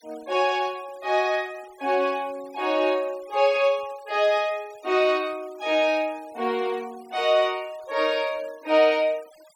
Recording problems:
noise reduction artefacts; signal-to-artefact ratio 25 dB

